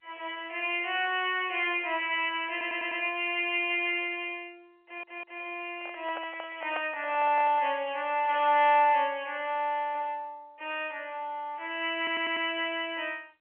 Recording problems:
telephone audio; 300 Hz to 3.3 kHz, G.711
audio stuttering; at 2.5 s, at 5 s and at 12 s
microphone handling noise; from 6 to 8 s; peak -4 dB vs average level

